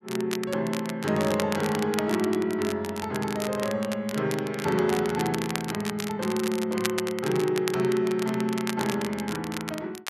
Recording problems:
crackle; vinyl, SNR 9 dB

